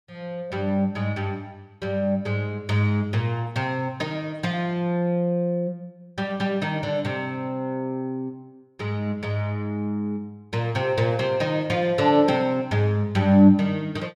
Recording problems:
none

